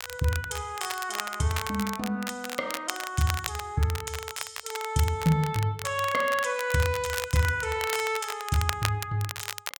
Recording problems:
crackle; vinyl, SNR 7 dB

